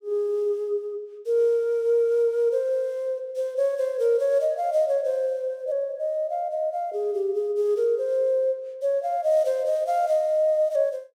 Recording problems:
none

